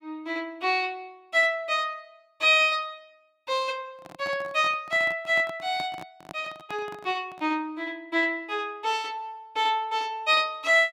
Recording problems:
microphone handling noise; from 4 to 7.5 s; peak -10 dB vs average level

